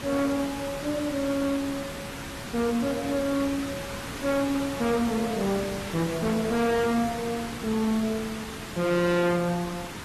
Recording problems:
codec artefacts; AAC, log-spectral distance 5 dB, nothing above 13.1 kHz
distorted audio; soft clipping, signal-to-distortion ratio 6 dB
hiss; slope -3 dB per octave, SNR 8 dB

